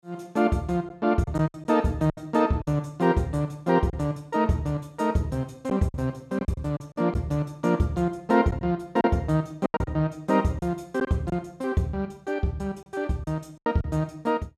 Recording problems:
lost packets; 6% of the sound replaced, filled with silence

